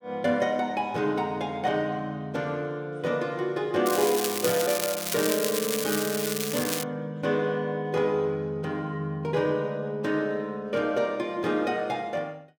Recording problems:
crackle; from 4 to 7 s; loose cable, SNR 2 dB

